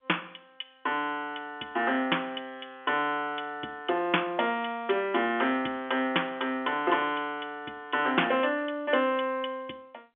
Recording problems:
phone line; 260 Hz to 3.4 kHz, G.711

